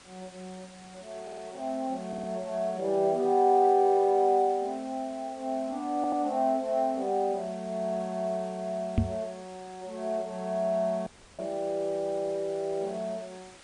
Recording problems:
lossy codec; MP3, log-spectral distance 4 dB
background hiss; slope -1 dB per octave, SNR 23 dB
audio stuttering; at 1 s, at 2 s and at 6 s
microphone thump; at 9 s; peak +7 dB vs average level
audio cutting out; at 11 s

